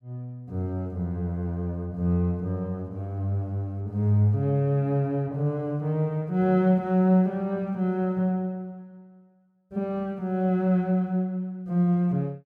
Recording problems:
none

